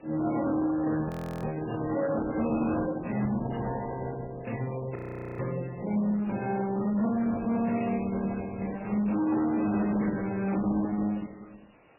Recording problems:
lossy codec; Opus, then MP3, log-spectral distance 7 dB, nothing above 20.1 kHz
distorted audio; hard clipping, signal-to-distortion ratio 11 dB
background hiss; SNR 28 dB
frozen audio; at 1 s and at 5 s
crackling; at 1.5 s, at 3 s and at 11 s; loose cable, SNR 27 dB

